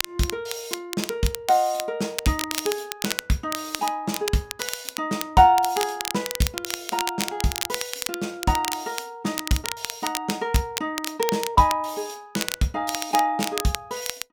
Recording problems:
crackling; vinyl, SNR 6 dB

